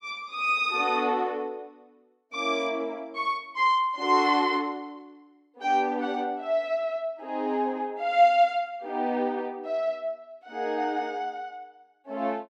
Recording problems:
none

